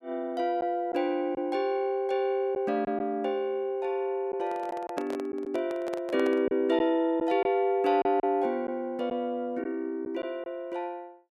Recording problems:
lost packets; 3% of the sound replaced, filled with silence
handling noise; from 4.5 to 6.5 s; peak -3 dB vs average level

